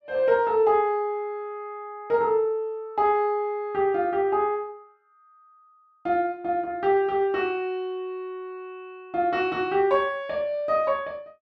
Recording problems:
none

